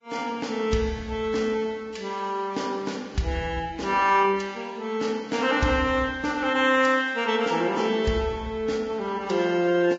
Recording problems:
lossy codec; Vorbis, log-spectral distance 3 dB, nothing above 7.3 kHz

